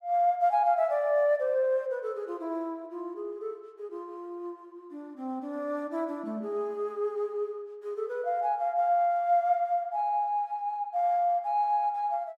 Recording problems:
none

